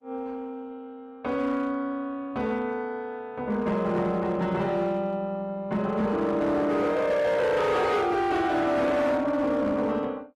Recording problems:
lossy compression; Opus, log-spectral distance 2 dB, nothing above 13.1 kHz
distortion; hard clipping, signal-to-distortion ratio 10 dB

